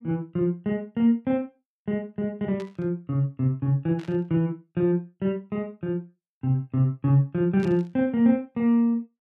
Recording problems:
burst of static; at 2.5 s, at 4 s and at 7.5 s; peak -14 dB vs average level

